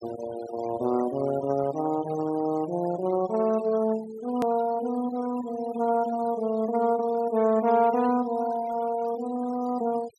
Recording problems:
noise reduction artefacts; signal-to-artefact ratio 18 dB
hard cut with a click; at 4.5 s

